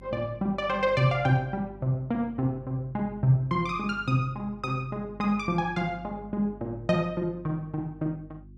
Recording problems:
mains hum; 50 Hz, harmonics up to 350 Hz, SNR 20 dB

